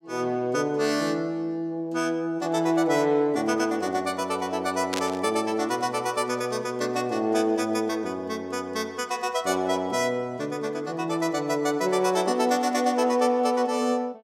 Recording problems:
static burst; at 5 s; peak -1 dB vs average level

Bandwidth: 16.5 kHz